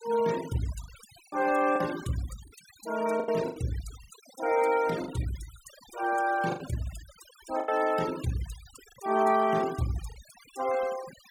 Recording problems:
denoising artefacts; signal-to-artefact ratio 16 dB
lost packets; 6% of the sound replaced, filled with the last packet

